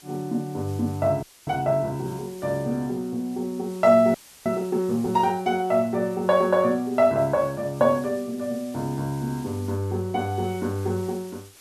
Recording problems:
background hiss; slope 0 dB per octave, SNR 23 dB
audio freezing; at 1 s and at 4 s

